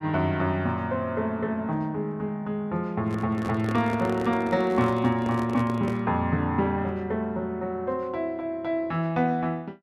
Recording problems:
handling noise; from 3 to 6 s; peak -4 dB vs average level

